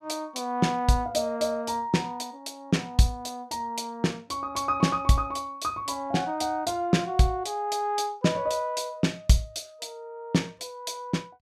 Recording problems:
none

